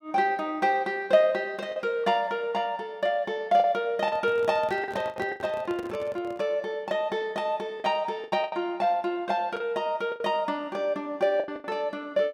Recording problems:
packet loss; 7% of the sound replaced, filled with the last packet
microphone handling noise; from 4 to 6.5 s; peak -8 dB vs average level

